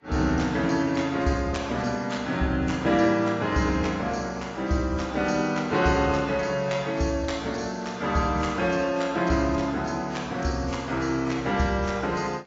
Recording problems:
codec artefacts; AAC, log-spectral distance 3 dB

